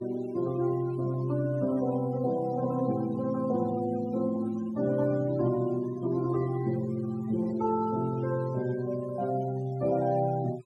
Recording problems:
denoising artefacts; signal-to-artefact ratio 19 dB

